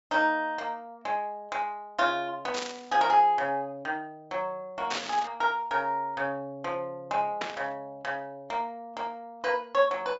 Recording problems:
treble cut off; nothing above 8 kHz
burst of static; at 2.5 s, at 5 s and at 7.5 s; peak +1 dB vs average level

